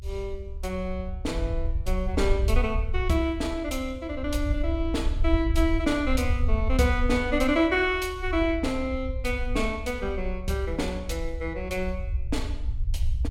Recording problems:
low-frequency rumble; below 68 Hz, SNR 4 dB

